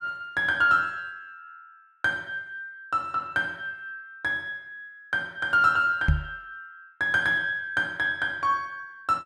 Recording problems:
microphone bump; at 6 s; peak +7 dB vs average level

